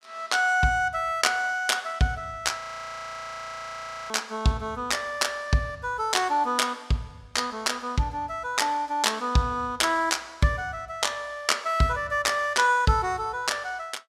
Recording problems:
audio freezing; at 2.5 s for 1.5 s

